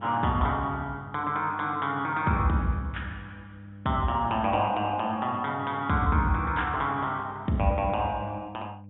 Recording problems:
treble missing; nothing above 3.7 kHz
hum; 50 Hz, harmonics up to 600 Hz, SNR 18 dB

